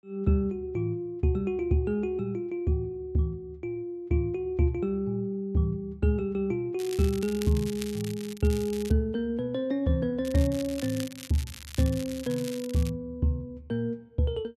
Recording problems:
crackling; from 7 to 9 s and from 10 to 13 s; loose cable, SNR 14 dB

